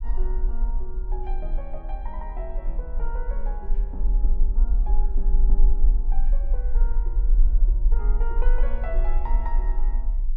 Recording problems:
low-frequency rumble; below 40 Hz, strongest tone 20 Hz, SNR -14 dB

